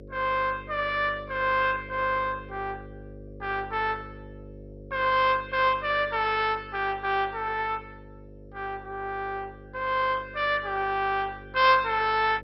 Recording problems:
lossy codec; MP2, log-spectral distance 4 dB, nothing above 4.8 kHz
hum; 50 Hz, harmonics up to 550 Hz, SNR 19 dB

